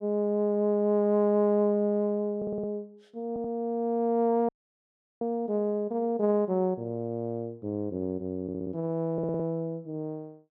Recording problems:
stutter; 4 times, first at 2.5 s
dropout; at 4.5 s for 0.5 s

